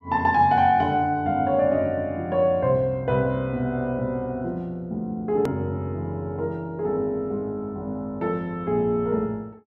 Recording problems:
edit click; at 5.5 s

